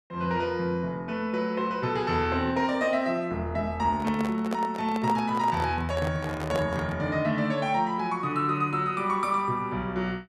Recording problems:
microphone handling noise; from 4 to 7 s; peak -1 dB vs average level

